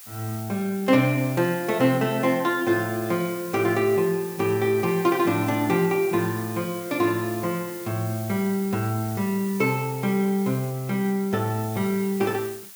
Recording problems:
background hiss; slope +2 dB per octave, SNR 15 dB

